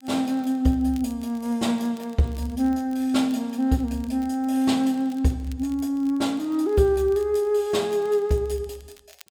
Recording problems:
crackling; vinyl, SNR 29 dB

